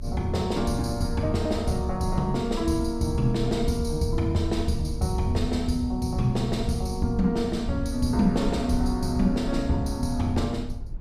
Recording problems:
rumble; below 66 Hz, SNR 10 dB

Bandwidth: 15.5 kHz